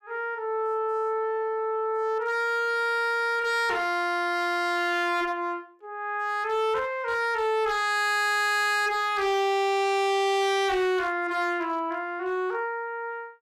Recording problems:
distorted audio; hard clipping, uneven, signal-to-distortion ratio 7 dB

